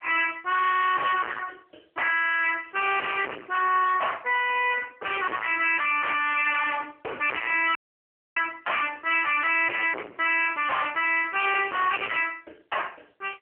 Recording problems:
phone line; 320 Hz to 3.1 kHz, AMR-NB
distorted audio; hard clipping, uneven, signal-to-distortion ratio 1 dB
dropout; at 8 s for 0.5 s

